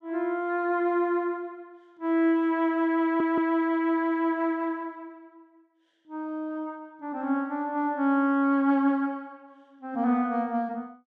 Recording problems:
stutter; at 3 s

